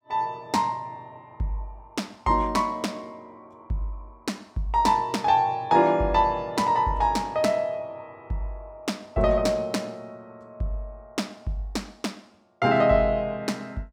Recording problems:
none

